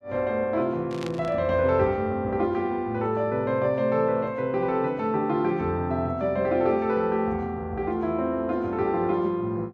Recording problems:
static burst; at 1 s; peak -9 dB vs average level

